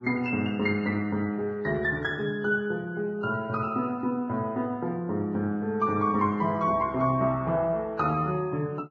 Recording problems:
codec artefacts; Vorbis, log-spectral distance 2 dB

